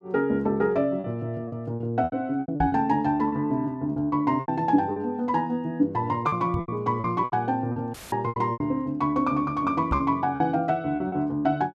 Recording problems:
lost packets; 11% of the sound replaced, filled with repeated pitch periods
microphone thump; at 2.5 s, at 6.5 s and at 10 s; peak 0 dB vs average level
dropout; at 8 s; filled with static

